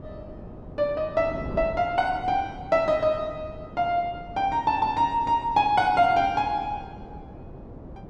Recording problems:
wind noise; below 390 Hz, SNR 16 dB

